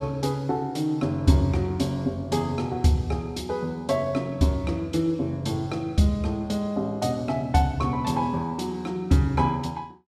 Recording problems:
none

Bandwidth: 14.5 kHz